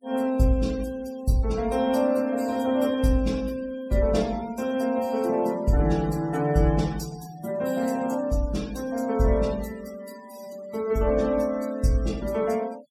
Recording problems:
noise reduction artefacts; signal-to-artefact ratio 22 dB

